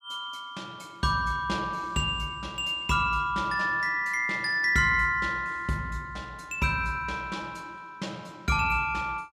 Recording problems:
none

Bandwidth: 15 kHz